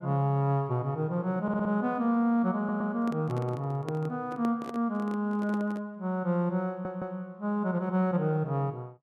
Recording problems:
stutter; at 1.5 s, at 2.5 s and at 6.5 s
handling noise; from 3 to 6 s; peak -4 dB vs average level

